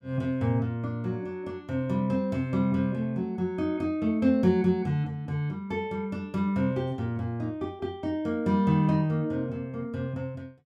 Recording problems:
none

